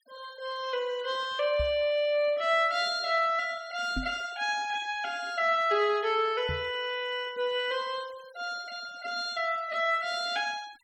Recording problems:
noise reduction artefacts; signal-to-artefact ratio 24 dB
microphone bump; at 1.5 s, at 4 s and at 6.5 s; peak -2 dB vs average level

